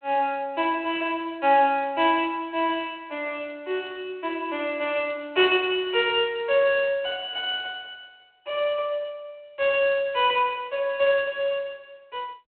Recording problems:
telephone audio; 300 Hz to 3.5 kHz, G.726

